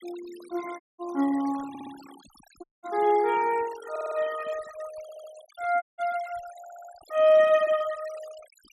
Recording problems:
denoising artefacts; signal-to-artefact ratio 20 dB
dropout; at 1 s, at 2.5 s and at 6 s
audio stuttering; 4 times, first at 1.5 s

